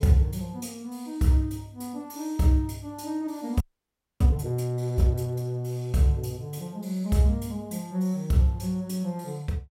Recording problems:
audio freezing; at 3.5 s for 0.5 s

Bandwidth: 16 kHz